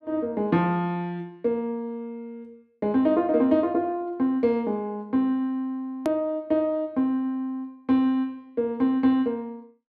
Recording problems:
edit click; at 6 s

